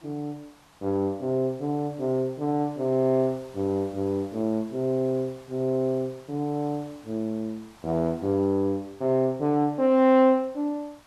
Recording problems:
background hiss; SNR 27 dB

